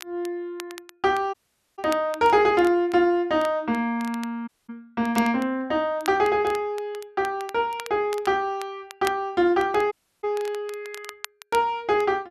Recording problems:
crackling; vinyl, SNR 19 dB
audio cutting out; at 1.5 s, at 4.5 s and at 10 s

